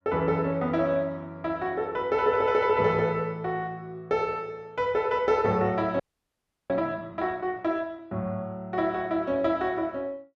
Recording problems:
audio freezing; at 6 s for 0.5 s

